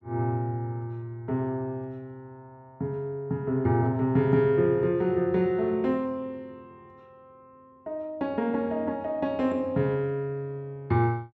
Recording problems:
none

